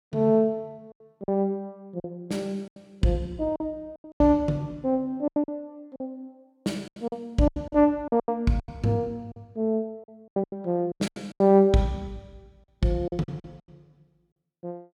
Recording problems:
packet loss; 13% of the sound replaced, filled with silence

